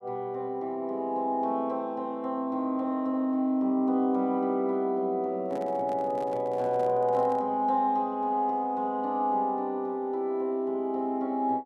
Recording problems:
microphone handling noise; from 5.5 to 7.5 s; peak -11 dB vs average level

